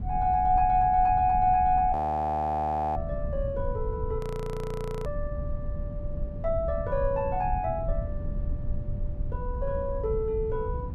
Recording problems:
low-frequency rumble; below 98 Hz, SNR 8 dB
frozen audio; at 2 s for 1 s and at 4 s for 1 s

